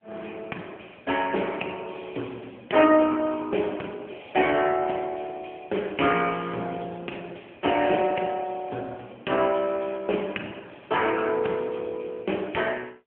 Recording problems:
telephone audio; 190 Hz to 3.3 kHz, AMR-NB

